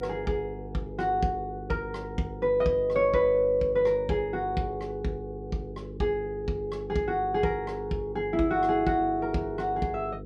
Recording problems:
hum; 50 Hz, harmonics up to 500 Hz, SNR 12 dB

